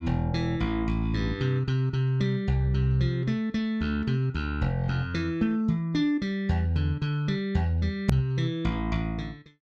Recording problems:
edit click; at 8 s

